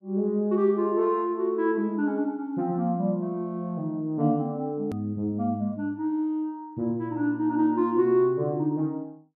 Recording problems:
click at an edit; at 5 s

